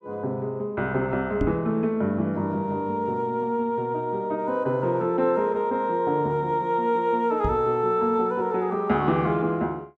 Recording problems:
microphone bump; at 1.5 s and at 7.5 s; peak +1 dB vs average level

